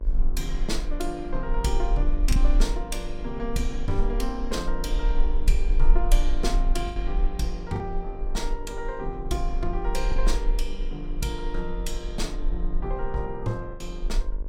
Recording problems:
electrical hum; 50 Hz, harmonics up to 1.6 kHz, SNR 14 dB
low-frequency rumble; below 36 Hz, strongest tone 22 Hz, SNR -2 dB
lost packets; 2% of the sound replaced, filled with the last packet

